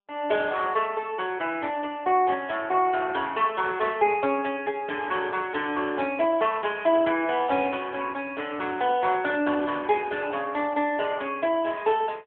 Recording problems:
telephone audio; 340 Hz to 3.5 kHz, AMR-NB

